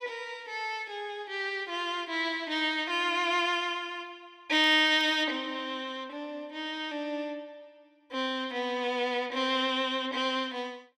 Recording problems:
crackling; at 4.5 s; loose cable, SNR 27 dB

